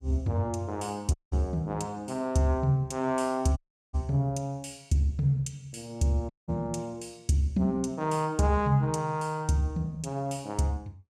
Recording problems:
audio cutting out; at 1 s, at 3.5 s and at 6.5 s

